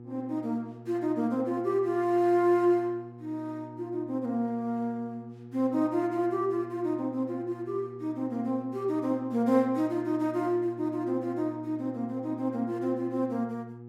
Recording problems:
hum; 60 Hz, harmonics up to 840 Hz, SNR 16 dB

